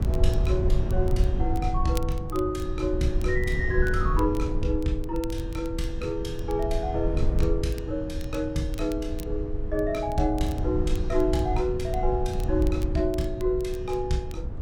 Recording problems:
rumble; below 86 Hz, SNR 2 dB
crackle; vinyl, SNR 22 dB

